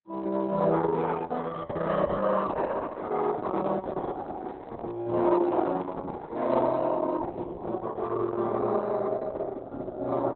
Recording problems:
codec artefacts; Opus, log-spectral distance 4 dB, nothing above 4 kHz
handling noise; from 3.5 to 7 s; peak -8 dB vs average level

